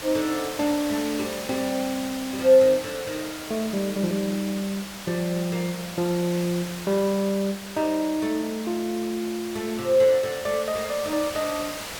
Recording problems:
hiss; slope -1 dB per octave, SNR 10 dB

